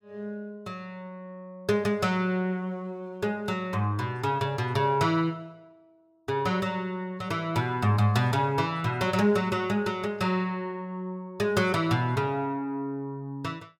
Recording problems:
none

